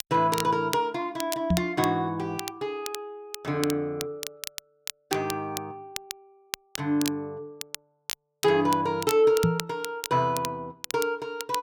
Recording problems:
crackle; vinyl, SNR 10 dB
microphone bump; at 1.5 s and at 9.5 s; peak +6 dB vs average level

